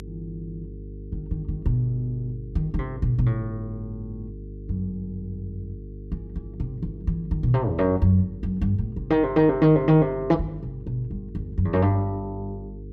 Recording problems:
hum; 50 Hz, harmonics up to 450 Hz, SNR 14 dB

